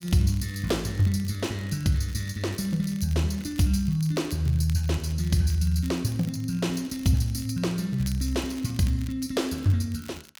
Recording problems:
crackle; vinyl, SNR 22 dB

